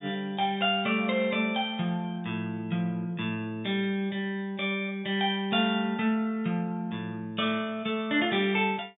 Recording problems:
treble cut off; nothing above 4 kHz

